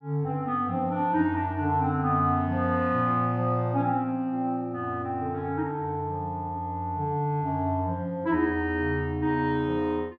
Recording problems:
none

